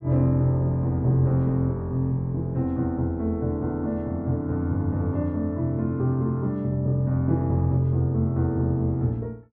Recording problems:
none

